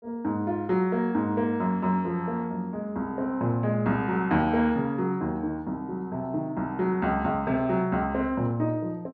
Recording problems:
none

